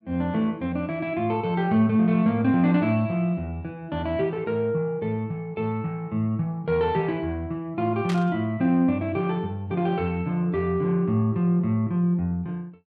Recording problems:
static burst; at 8 s; peak -6 dB vs average level

